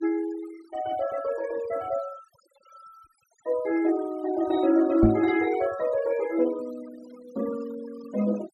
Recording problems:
denoising artefacts; signal-to-artefact ratio 18 dB
microphone bump; at 5 s; peak +8 dB vs average level

